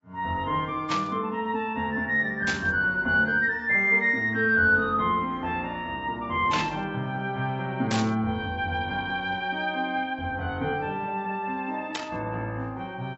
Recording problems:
codec artefacts; AAC, log-spectral distance 2 dB, nothing above 6.3 kHz
static burst; 5 times, first at 1 s; peak 0 dB vs average level

